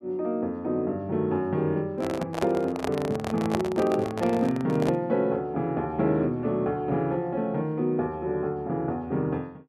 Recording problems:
handling noise; from 2 to 5 s; peak +3 dB vs average level

